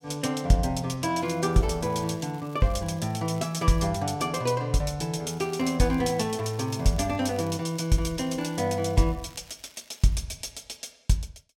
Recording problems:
crackling; from 1 to 4 s and from 5.5 to 10 s; loose cable, SNR 26 dB

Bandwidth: 16 kHz